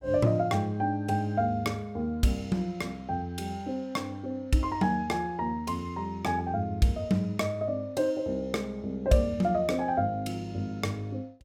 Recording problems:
none

